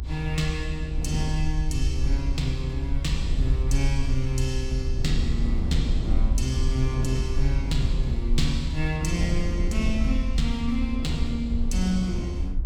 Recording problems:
low-frequency rumble; below 70 Hz, SNR 0 dB
wind noise; below 250 Hz, SNR 7 dB

